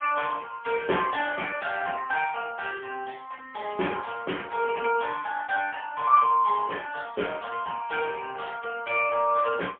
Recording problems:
telephone audio; 300 Hz to 3.3 kHz, AMR-NB, then MP3

